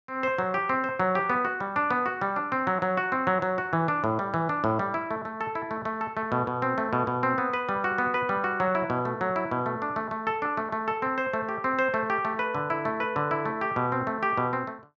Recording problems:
none

